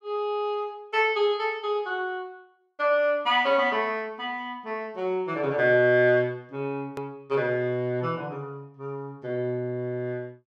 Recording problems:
edit click; at 7 s

